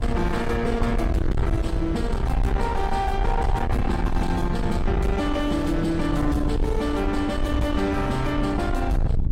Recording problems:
lossy compression; AAC, log-spectral distance 2 dB, nothing above 15.5 kHz
distortion; soft clipping, signal-to-distortion ratio 7 dB
rumble; below 130 Hz, SNR 2 dB

